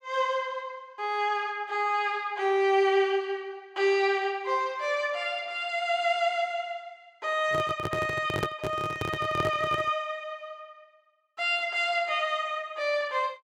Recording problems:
microphone handling noise; from 7.5 to 10 s; peak +1 dB vs average level

